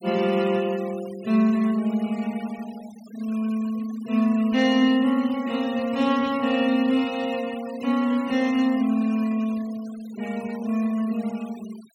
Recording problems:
denoising artefacts; signal-to-artefact ratio 20 dB

